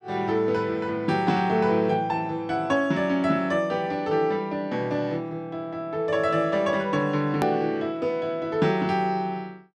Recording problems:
click at an edit; at 7.5 s

